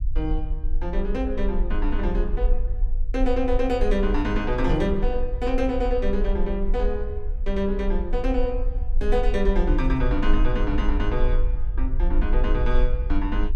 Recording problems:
rumble; below 42 Hz, strongest tone 20 Hz, SNR 1 dB

